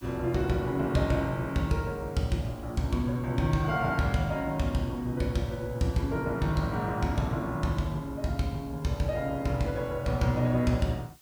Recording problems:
background hiss; slope +1 dB per octave, SNR 27 dB

